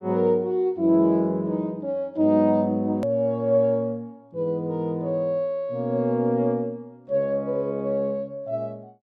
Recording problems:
click at an edit; at 3 s

